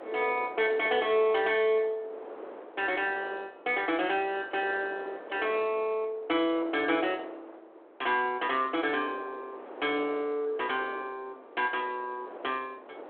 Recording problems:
phone line; 280 Hz to 3.5 kHz, G.726
wind on the microphone; below 830 Hz, SNR 16 dB

